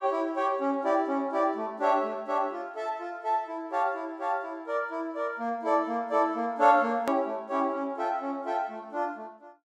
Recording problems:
edit click; at 7 s

